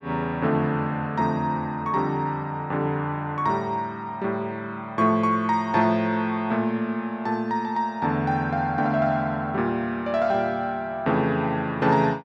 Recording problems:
none

